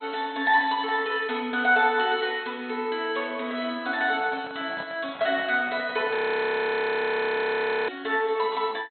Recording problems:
codec artefacts; MP2, log-spectral distance 4 dB, nothing above 4.1 kHz
handling noise; from 4 to 6 s; peak -9 dB vs average level
frozen audio; at 6 s for 1.5 s

